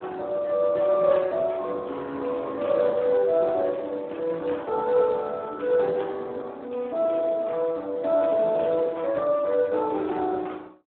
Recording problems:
phone line; 240 Hz to 3.7 kHz, Speex

